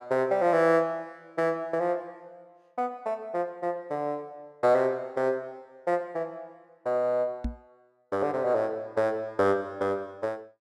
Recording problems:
microphone thump; at 7.5 s; peak 0 dB vs average level

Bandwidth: 12.5 kHz